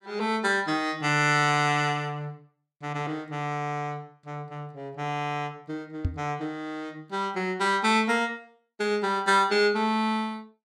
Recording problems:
microphone bump; at 6 s; peak +3 dB vs average level

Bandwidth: 17 kHz